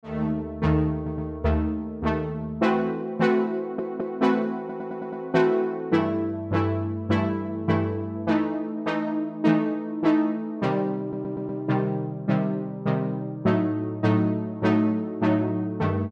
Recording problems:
stutter; 4 times, first at 1 s

